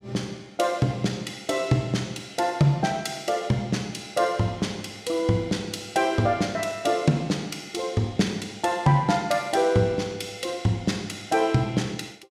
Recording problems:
none

